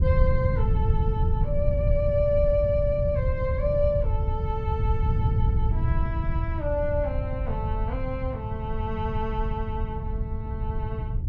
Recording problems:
low-frequency rumble; below 110 Hz, SNR -2 dB

